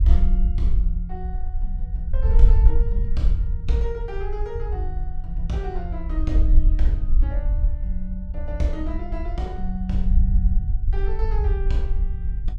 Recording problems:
low-frequency rumble; below 56 Hz, SNR -7 dB

